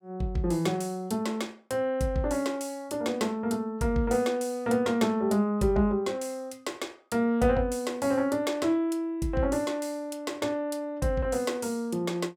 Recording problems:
none

